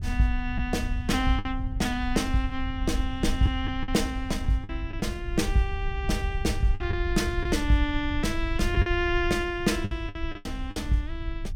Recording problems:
wind on the microphone; below 74 Hz, SNR 5 dB
packet loss; 6% of the sound replaced, filled with the last packet

